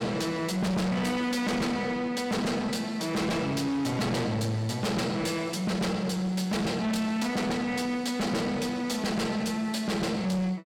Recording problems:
distorted audio; soft clipping, signal-to-distortion ratio 6 dB

